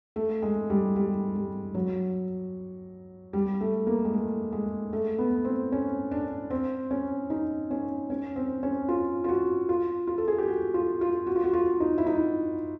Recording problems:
none

